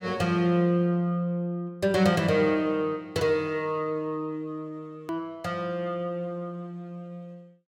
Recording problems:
click at an edit; at 5 s

